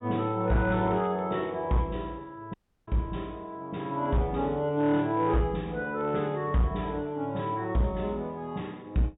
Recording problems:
low-pass filter; nothing above 4 kHz
distorted audio; hard clipping, uneven, signal-to-distortion ratio 12 dB
audio cutting out; at 2.5 s

